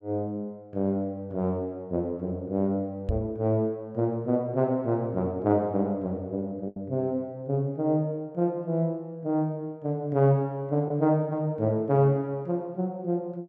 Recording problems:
lost packets; 0.7% of the sound replaced, filled with the last packet
microphone thump; at 3 s; peak +3 dB vs average level

